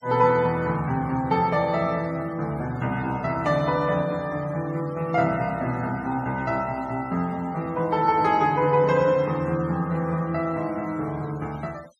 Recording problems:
noise reduction artefacts; signal-to-artefact ratio 25 dB

